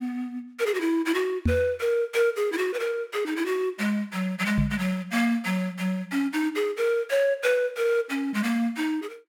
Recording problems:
microphone thump; at 1.5 s and at 4.5 s; peak +5 dB vs average level

